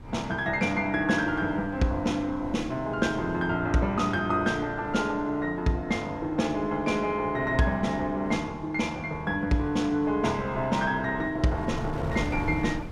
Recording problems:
wind on the microphone; below 270 Hz, SNR 15 dB

